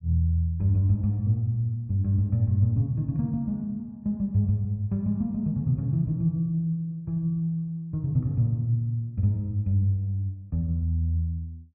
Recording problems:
none

